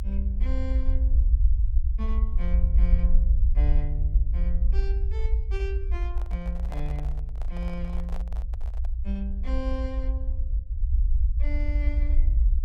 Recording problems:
low-frequency rumble; below 60 Hz, SNR -11 dB
microphone handling noise; from 6 to 9 s; peak 0 dB vs average level

